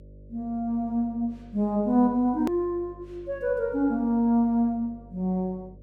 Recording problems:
hum; 50 Hz, harmonics up to 600 Hz, SNR 22 dB
click at an edit; at 2.5 s

